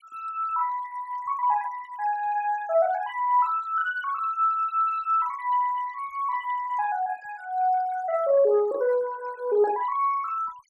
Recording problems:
noise reduction artefacts; signal-to-artefact ratio 23 dB

